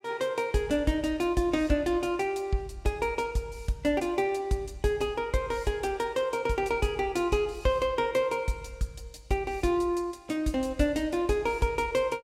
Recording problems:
none

